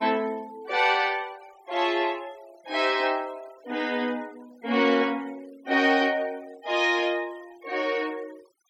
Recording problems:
denoising artefacts; signal-to-artefact ratio 24 dB

